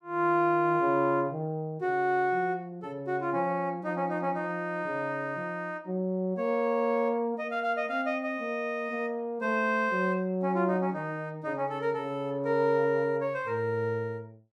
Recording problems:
none

